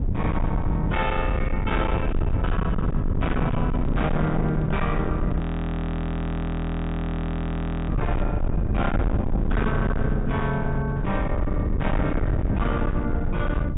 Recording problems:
treble cut off; nothing above 4 kHz
distorted audio; hard clipping, signal-to-distortion ratio 7 dB
rumble; below 160 Hz, SNR 0 dB
handling noise; from 3.5 to 8.5 s; peak -7 dB vs average level
frozen audio; at 5.5 s for 2.5 s

